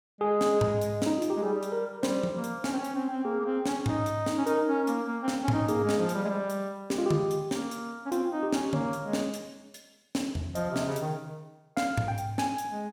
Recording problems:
none

